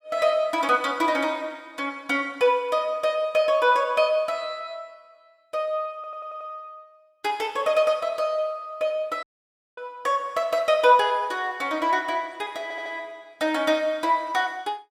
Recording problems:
audio stuttering; at 6 s and at 13 s
audio cutting out; at 9 s for 0.5 s

